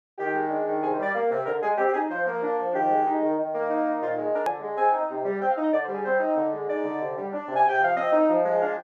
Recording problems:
hard cut with a click; at 4.5 s

